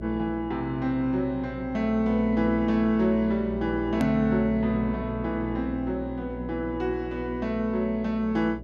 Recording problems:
electrical hum; 60 Hz, harmonics up to 660 Hz, SNR 12 dB
edit click; at 4 s

